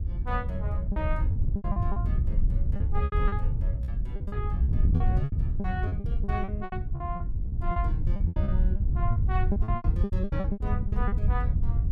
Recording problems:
wind on the microphone; below 94 Hz, SNR -9 dB
packet loss; 16% of the sound replaced, filled with repeated pitch periods

